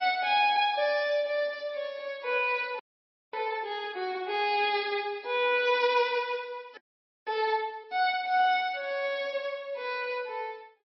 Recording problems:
codec artefacts; MP3, log-spectral distance 2 dB, nothing above 5.2 kHz
audio freezing; at 3 s for 0.5 s and at 7 s for 0.5 s

